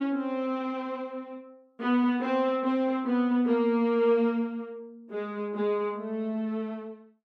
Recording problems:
none

